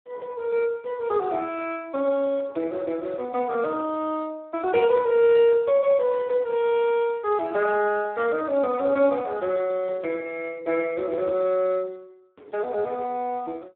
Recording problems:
telephone audio; 240 Hz to 3.9 kHz, Speex

